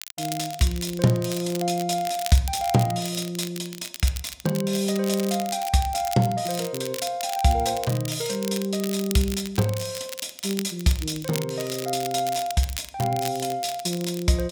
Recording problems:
crackling; vinyl, SNR 11 dB

